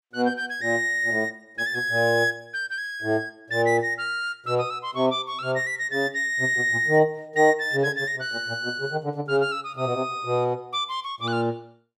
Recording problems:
none

